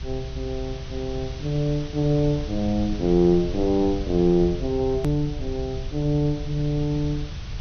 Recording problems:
treble cut off; nothing above 6.3 kHz
background hiss; slope -1 dB per octave, SNR 18 dB
rumble; below 92 Hz, SNR 10 dB
hard cut with a click; at 5 s

